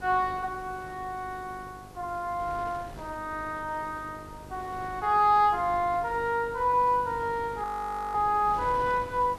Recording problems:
electrical hum; 50 Hz, harmonics up to 1 kHz, SNR 22 dB
hiss; slope -2 dB per octave, SNR 29 dB
wind noise; below 780 Hz, SNR 19 dB
audio freezing; at 7.5 s for 0.5 s

